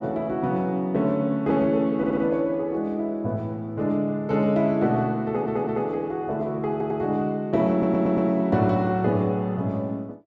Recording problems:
stutter; 4 times, first at 2 s

